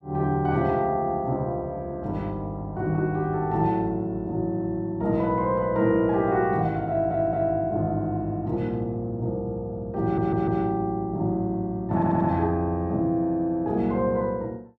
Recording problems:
stutter; at 7 s, at 10 s and at 12 s

